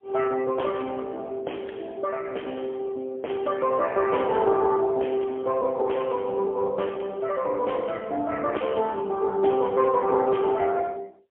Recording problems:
telephone audio; 320 Hz to 3.2 kHz, AMR-NB, then MP3

